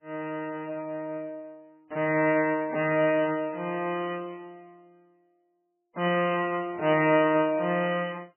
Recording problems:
lossy compression; MP3, log-spectral distance 2 dB, nothing above 2.4 kHz

